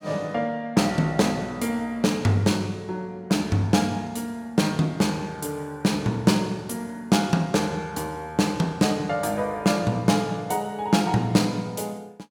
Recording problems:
none

